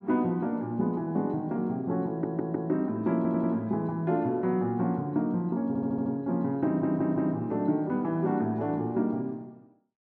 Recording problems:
stutter; 4 times, first at 2 s

